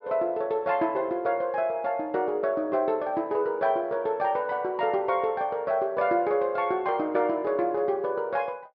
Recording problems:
low-pass filter; nothing above 5.5 kHz

